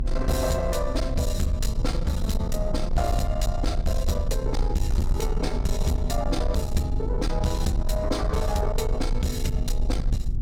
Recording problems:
distortion; soft clipping, signal-to-distortion ratio 10 dB
hum; 60 Hz, harmonics up to 720 Hz, SNR 15 dB
rumble; below 58 Hz, SNR 1 dB

